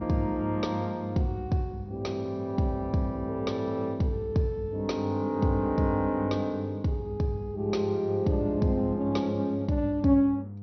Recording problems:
treble cut off; nothing above 6 kHz
hum; 50 Hz, harmonics up to 500 Hz, SNR 12 dB

